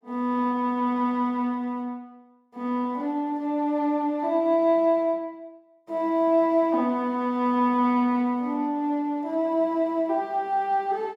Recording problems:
none

